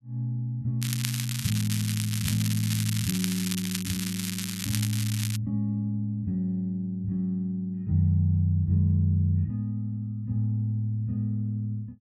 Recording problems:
crackling; from 1 to 5.5 s; loose cable, SNR 5 dB

